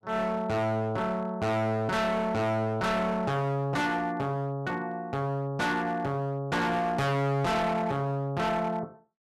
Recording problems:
distorted audio; hard clipping, signal-to-distortion ratio 6 dB

